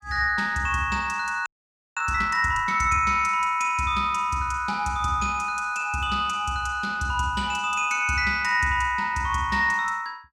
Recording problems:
frozen audio; at 1.5 s for 0.5 s

